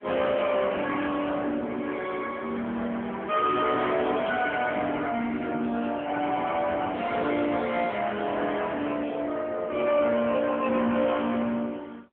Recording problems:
phone line; 190 Hz to 3.4 kHz, AMR-NB
distortion; soft clipping, signal-to-distortion ratio 12 dB

